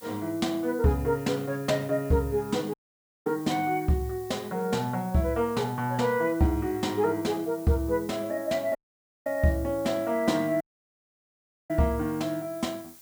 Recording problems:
background hiss; SNR 20 dB
dropout; at 2.5 s for 0.5 s, at 9 s for 0.5 s and at 11 s for 1 s

